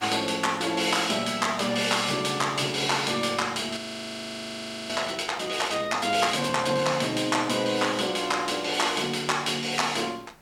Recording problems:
background hiss; slope -5 dB per octave, SNR 28 dB
frozen audio; at 4 s for 1 s

